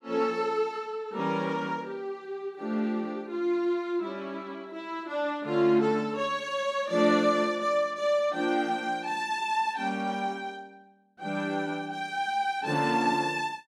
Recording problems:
none

